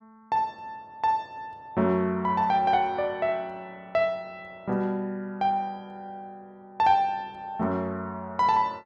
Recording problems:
none

